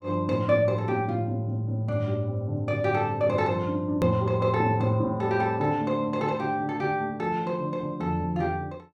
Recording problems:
click at an edit; at 4 s

